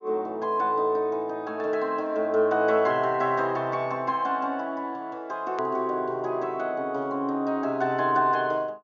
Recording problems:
treble cut off; nothing above 7.1 kHz
hard cut with a click; at 5.5 s

